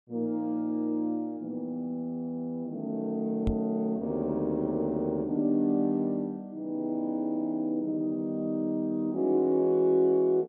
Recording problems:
microphone bump; at 3.5 s; peak +2 dB vs average level

